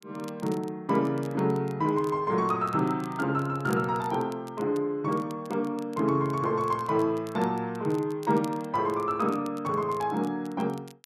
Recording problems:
crackle; vinyl, SNR 25 dB

